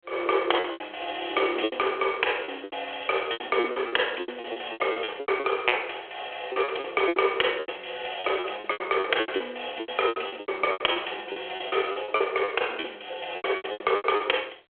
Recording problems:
phone line; 320 Hz to 3.3 kHz, G.726
packet loss; 19% of the sound replaced, filled with repeated pitch periods

